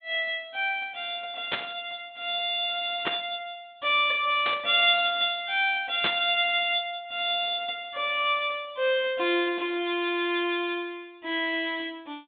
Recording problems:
treble cut off; nothing above 4 kHz
static burst; 4 times, first at 1.5 s; peak +1 dB vs average level

